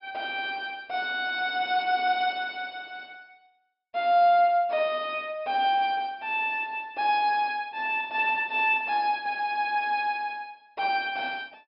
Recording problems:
treble cut off; nothing above 5.5 kHz

